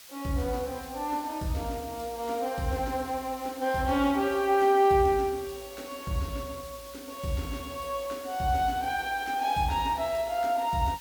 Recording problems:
background hiss; slope +3 dB per octave, SNR 17 dB

